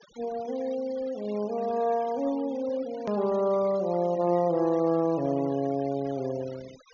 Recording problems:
low-pass filter; nothing above 6.8 kHz
denoising artefacts; signal-to-artefact ratio 22 dB
hard cut with a click; at 3 s

